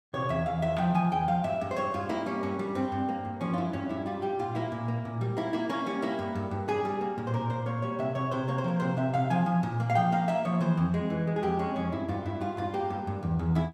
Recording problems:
none

